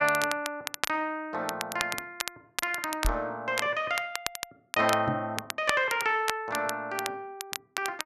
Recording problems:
crackle; vinyl, SNR 6 dB
microphone bump; at 3 s and at 5 s; peak +4 dB vs average level

